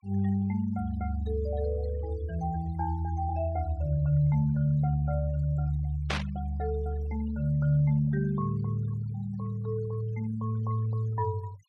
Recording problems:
noise reduction artefacts; signal-to-artefact ratio 24 dB
burst of static; at 6 s; peak +2 dB vs average level

